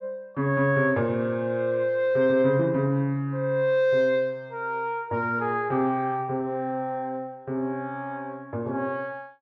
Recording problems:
none

